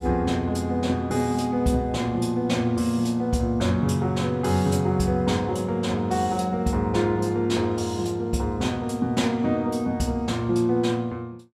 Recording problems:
none

